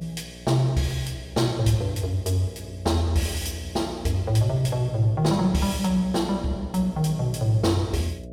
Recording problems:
hum; 60 Hz, harmonics up to 660 Hz, SNR 16 dB

